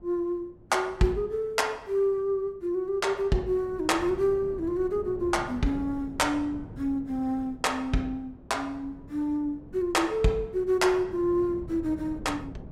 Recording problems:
wind on the microphone; below 290 Hz, SNR 17 dB

